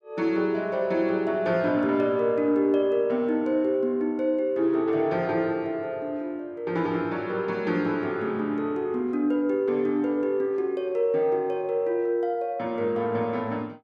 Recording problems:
none

